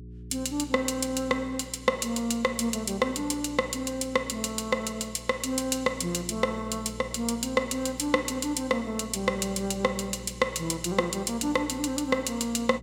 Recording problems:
mains hum; 60 Hz, harmonics up to 420 Hz, SNR 16 dB

